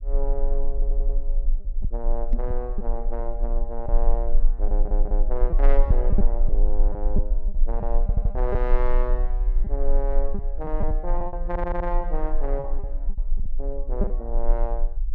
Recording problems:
rumble; below 34 Hz, strongest tone 18 Hz, SNR -6 dB
packet loss; 6% of the sound replaced, filled with repeated pitch periods
stutter; 4 times, first at 0.5 s
knock on the microphone; at 2.5 s; peak +1 dB vs average level

